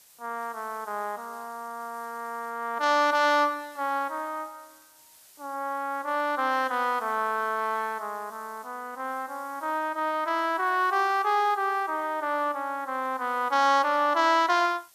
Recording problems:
hiss; slope +1 dB per octave, SNR 26 dB

